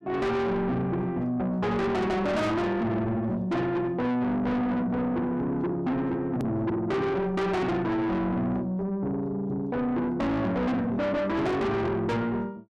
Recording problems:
distorted audio; soft clipping, signal-to-distortion ratio 6 dB
hard cut with a click; at 6.5 s

